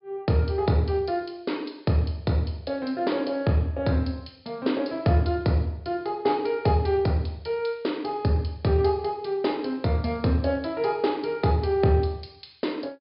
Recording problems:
treble cut off; nothing above 5.1 kHz

